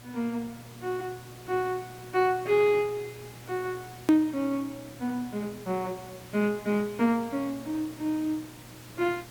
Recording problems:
hum; 60 Hz, harmonics up to 720 Hz, SNR 21 dB
background hiss; slope -3 dB per octave, SNR 18 dB
hard cut with a click; at 4 s

